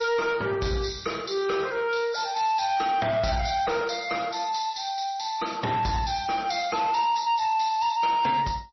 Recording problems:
codec artefacts; MP3, log-spectral distance 5 dB, nothing above 5.8 kHz
distortion; soft clipping, signal-to-distortion ratio 11 dB

